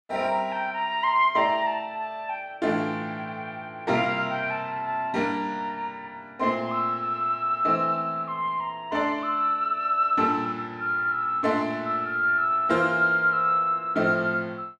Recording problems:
none

